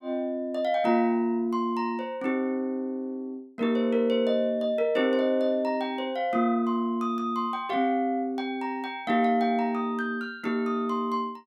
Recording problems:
none

